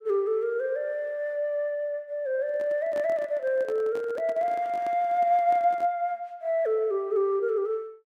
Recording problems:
microphone handling noise; from 2.5 to 6 s; peak -9 dB vs average level

